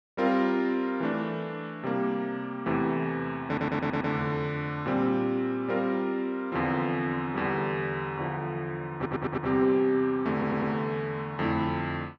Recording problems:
stutter; at 3.5 s, at 9 s and at 10 s

